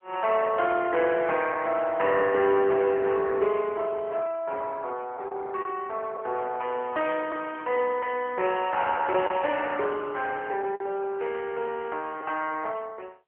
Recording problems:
telephone audio; 320 Hz to 3.2 kHz, AMR-NB
packet loss; 1.7% of the sound replaced, filled with the last packet

